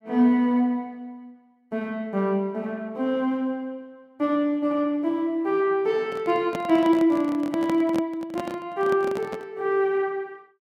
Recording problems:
microphone handling noise; from 6 to 9.5 s; peak -4 dB vs average level

